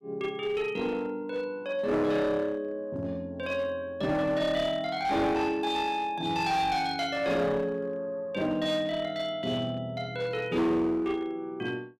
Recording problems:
distorted audio; hard clipping, uneven, signal-to-distortion ratio 10 dB

